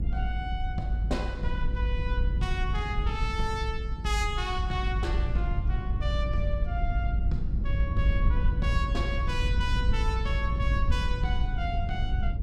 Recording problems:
rumble; below 78 Hz, SNR -4 dB

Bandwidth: 15.5 kHz